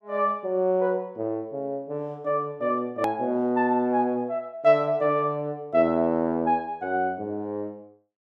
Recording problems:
hard cut with a click; at 3 s

